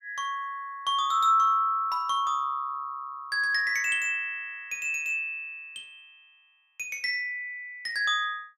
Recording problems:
none

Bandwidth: 16.5 kHz